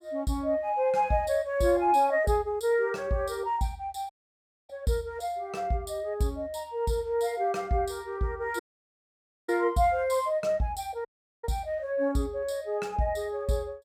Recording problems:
dropout; at 4 s for 0.5 s, at 8.5 s for 1 s and at 11 s

